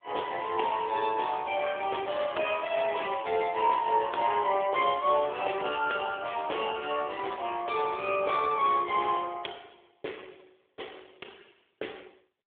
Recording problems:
phone line; 320 Hz to 3.5 kHz, AMR-NB

